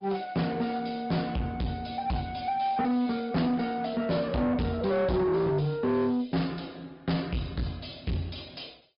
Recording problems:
low-pass filter; nothing above 5.2 kHz
lossy compression; Opus, log-spectral distance 3 dB
distortion; soft clipping, signal-to-distortion ratio 7 dB

